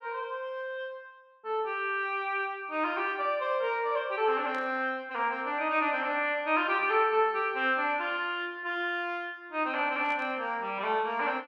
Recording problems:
static burst; at 4.5 s and at 10 s; peak -13 dB vs average level

